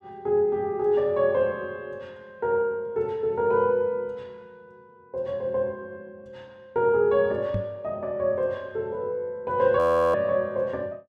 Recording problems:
microphone thump; at 7.5 s; peak -1 dB vs average level
audio freezing; at 10 s

